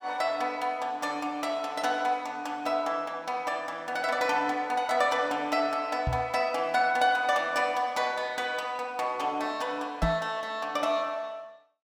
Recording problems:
microphone bump; at 6 s and at 10 s; peak +4 dB vs average level

